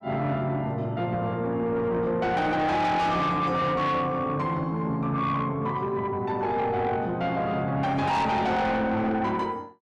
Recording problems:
distortion; soft clipping, signal-to-distortion ratio 7 dB

